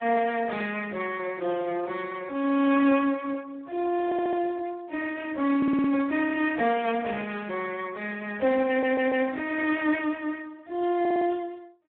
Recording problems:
telephone audio; 240 Hz to 3.4 kHz, Speex
stutter; 4 times, first at 4 s

